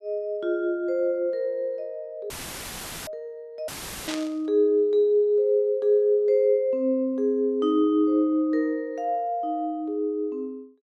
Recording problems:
dropout; at 2.5 s for 1 s and at 3.5 s; filled with static
burst of static; at 4 s; peak -5 dB vs average level

